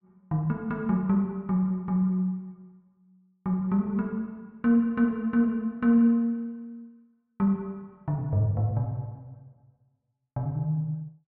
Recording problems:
none

